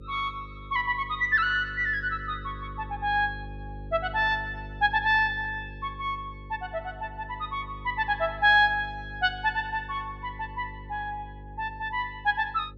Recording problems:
hum; 50 Hz, harmonics up to 550 Hz, SNR 16 dB

